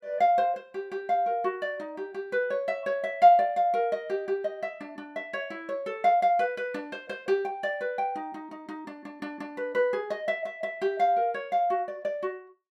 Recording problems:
none

